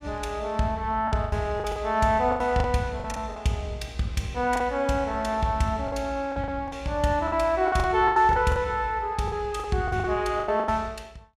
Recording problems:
packet loss; 11% of the sound replaced, filled with the last packet

